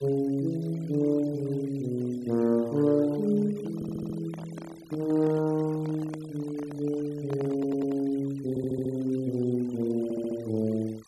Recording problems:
noise reduction artefacts; signal-to-artefact ratio 25 dB
microphone handling noise; from 3.5 to 8 s; peak -8 dB vs average level
audio stuttering; 4 times, first at 4 s

